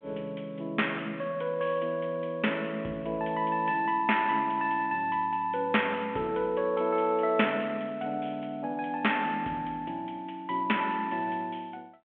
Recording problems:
telephone audio; 240 Hz to 3.4 kHz, G.726

